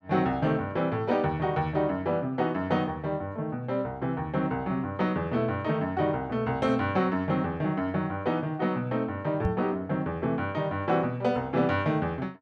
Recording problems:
microphone bump; at 9.5 s; peak +3 dB vs average level

